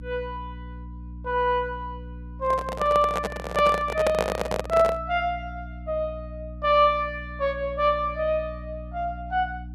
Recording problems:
hum; 60 Hz, harmonics up to 300 Hz, SNR 14 dB
microphone handling noise; from 2.5 to 5 s; peak +4 dB vs average level

